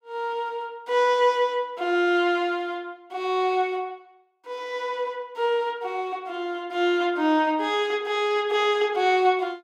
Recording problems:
none

